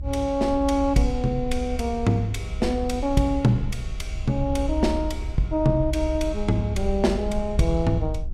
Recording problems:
rumble; below 66 Hz, SNR 7 dB

